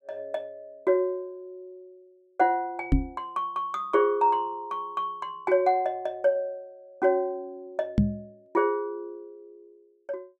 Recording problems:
knock on the microphone; at 3 s and at 8 s; peak +9 dB vs average level

